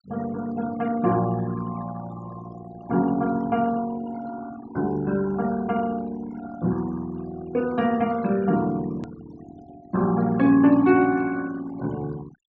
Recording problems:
treble missing; nothing above 8 kHz
denoising artefacts; signal-to-artefact ratio 19 dB
hard cut with a click; at 9 s

